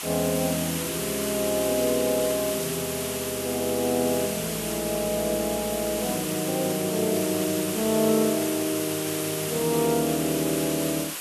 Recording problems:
background hiss; slope 0 dB per octave, SNR 4 dB

